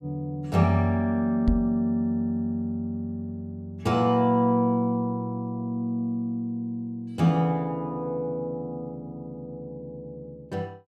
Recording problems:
knock on the microphone; at 1.5 s; peak +5 dB vs average level

